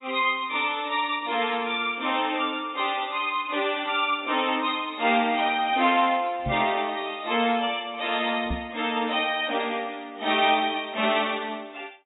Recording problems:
codec artefacts; AAC, log-spectral distance 5 dB, nothing above 3.2 kHz
microphone thump; at 6.5 s and at 8.5 s; peak -2 dB vs average level

